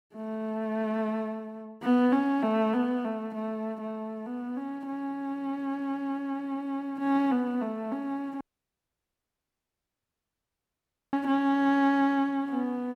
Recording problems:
dropout; at 8.5 s for 2.5 s

